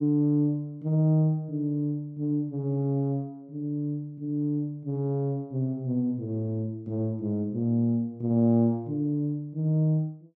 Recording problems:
none

